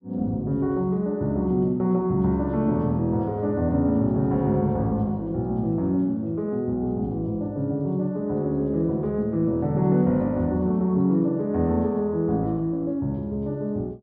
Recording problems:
low-pass filter; nothing above 5.5 kHz

